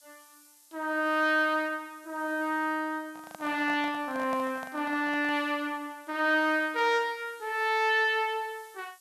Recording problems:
hiss; SNR 27 dB
microphone handling noise; from 3 to 5.5 s; peak -8 dB vs average level

